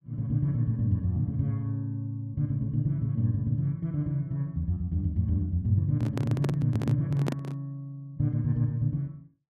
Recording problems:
microphone handling noise; from 6 to 7.5 s; peak +2 dB vs average level

